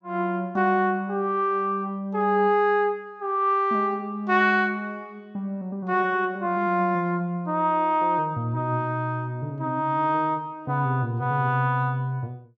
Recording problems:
none

